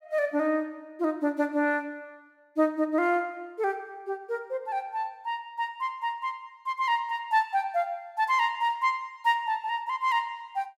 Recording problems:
none

